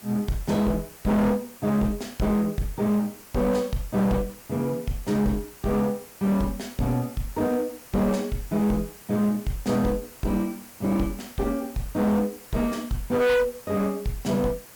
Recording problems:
distortion; hard clipping, uneven, signal-to-distortion ratio 7 dB
background hiss; slope -2 dB per octave, SNR 19 dB

